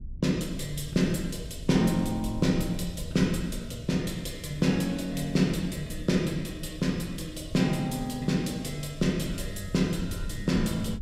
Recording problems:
rumble; below 98 Hz, SNR 13 dB

